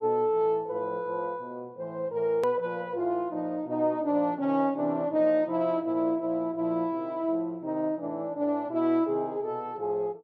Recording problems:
click at an edit; at 2.5 s

